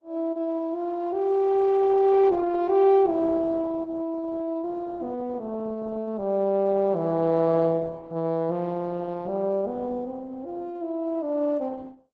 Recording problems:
lossy compression; Opus, log-spectral distance 2 dB

